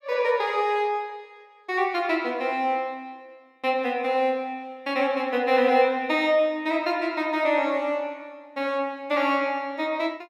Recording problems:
none

